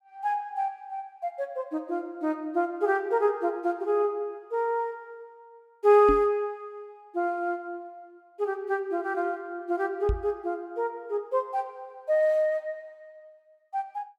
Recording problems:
knock on the microphone; at 6 s and at 10 s; peak +3 dB vs average level

